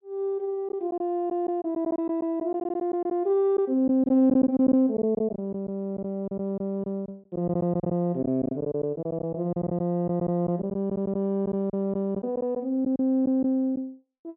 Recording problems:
treble missing; nothing above 4 kHz
lost packets; 9% of the sound replaced, filled with silence

